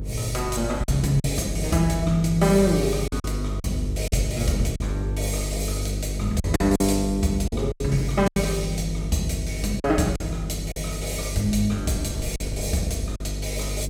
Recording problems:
hum; 50 Hz, harmonics up to 500 Hz, SNR 5 dB
wind noise; below 190 Hz, SNR 18 dB
packet loss; 6% of the sound replaced, filled with silence

